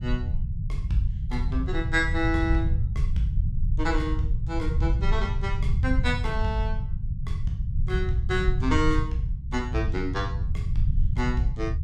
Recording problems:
rumble; below 94 Hz, SNR -1 dB

